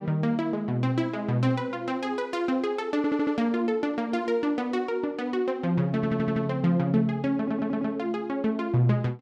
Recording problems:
audio stuttering; at 3 s, at 6 s and at 7.5 s

